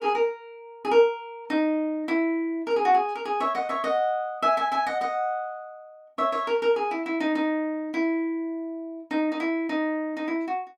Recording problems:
none

